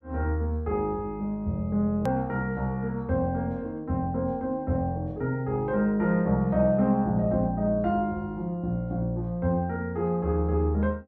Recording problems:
click at an edit; at 2 s

